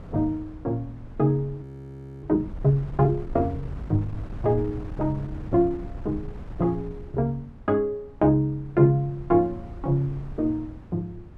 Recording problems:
wind on the microphone; below 140 Hz, SNR 15 dB
audio freezing; at 1.5 s for 0.5 s

